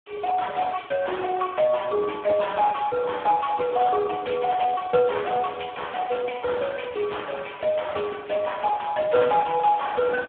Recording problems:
telephone audio; 130 Hz to 2.3 kHz, Speex

